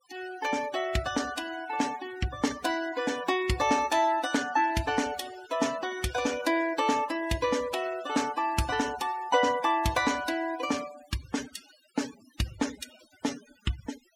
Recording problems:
denoising artefacts; signal-to-artefact ratio 15 dB

